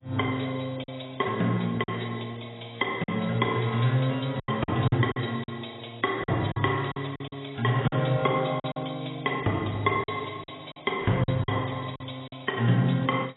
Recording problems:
codec artefacts; AAC, log-spectral distance 8 dB, nothing above 3.8 kHz
packet loss; 7% of the sound replaced, filled with silence

